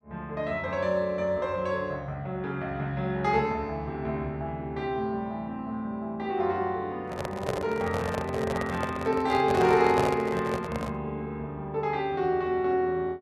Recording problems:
microphone handling noise; from 7 to 11 s; peak +3 dB vs average level

